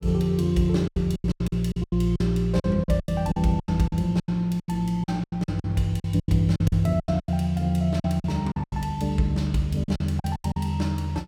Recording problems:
packet loss; 17% of the sound replaced, filled with silence

